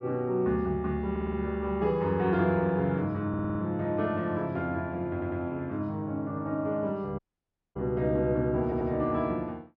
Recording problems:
stutter; 4 times, first at 1 s
audio cutting out; at 7 s for 0.5 s

